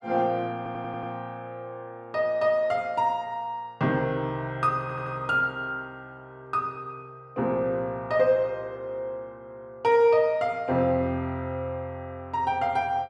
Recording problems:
audio stuttering; at 0.5 s and at 5 s

